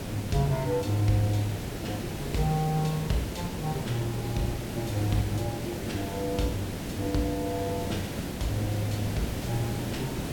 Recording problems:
background hiss; SNR 4 dB

